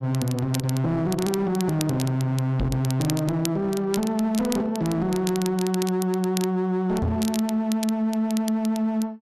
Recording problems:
distortion; hard clipping, signal-to-distortion ratio 10 dB
crackle; vinyl, SNR 13 dB
knock on the microphone; at 2.5 s and at 7 s; peak +3 dB vs average level

